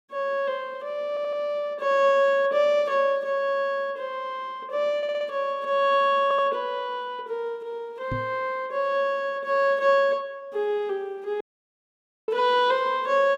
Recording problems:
stutter; at 1 s, at 5 s and at 6 s
microphone bump; at 8 s; peak -3 dB vs average level
dropout; at 11 s for 1 s

